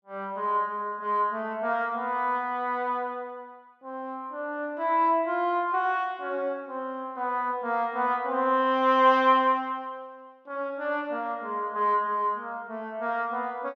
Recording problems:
none

